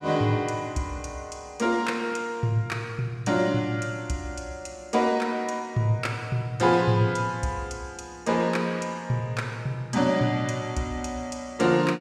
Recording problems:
none

